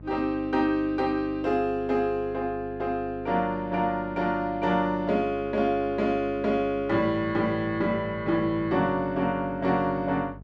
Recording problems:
hum; 50 Hz, harmonics up to 650 Hz, SNR 18 dB

